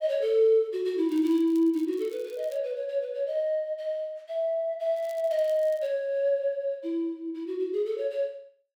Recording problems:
crackling; from 1 to 2.5 s and at 5 s; loose cable, SNR 27 dB

